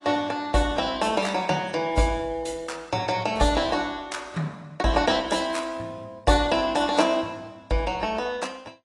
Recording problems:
lossy compression; AAC, log-spectral distance 3 dB, nothing above 10.7 kHz

